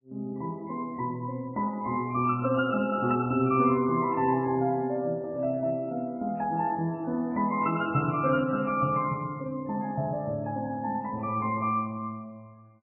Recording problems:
lossy compression; MP3, log-spectral distance 2 dB, nothing above 2.4 kHz

